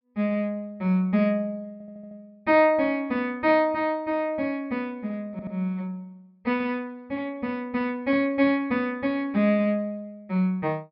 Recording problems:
treble cut off; nothing above 5.5 kHz
audio stuttering; at 1.5 s and at 5.5 s

